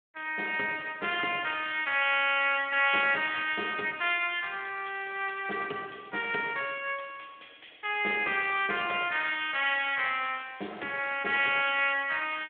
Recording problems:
phone line; 240 Hz to 3.4 kHz, Speex

